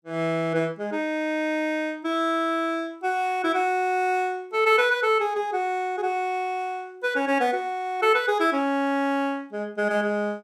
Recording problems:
none

